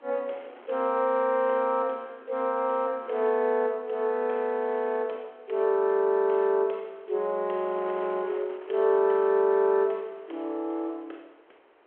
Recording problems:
telephone audio; 300 Hz to 3.7 kHz, G.726
wind on the microphone; below 1.4 kHz, SNR 24 dB

